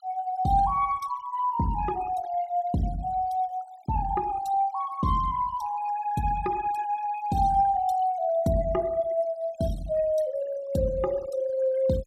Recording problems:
denoising artefacts; signal-to-artefact ratio 19 dB

